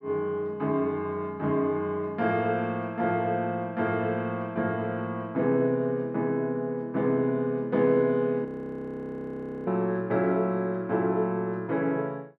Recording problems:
audio freezing; at 8.5 s for 1 s

